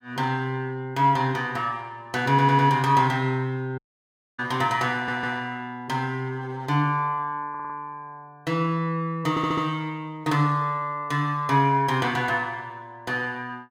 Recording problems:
audio stuttering; 4 times, first at 2.5 s
dropout; at 4 s for 0.5 s

